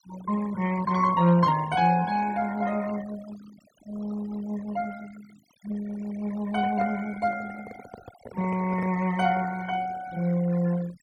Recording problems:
denoising artefacts; signal-to-artefact ratio 17 dB
handling noise; from 6.5 to 9.5 s; peak -8 dB vs average level

